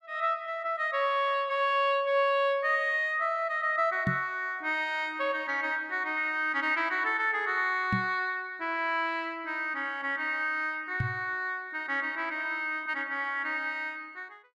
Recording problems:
microphone bump; at 4 s, at 8 s and at 11 s; peak +2 dB vs average level

